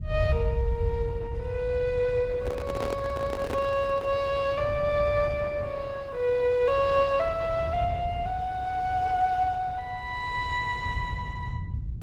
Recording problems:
codec artefacts; Opus, log-spectral distance 2 dB
low-frequency rumble; below 100 Hz, SNR 6 dB
microphone handling noise; from 2.5 to 4 s; peak -1 dB vs average level

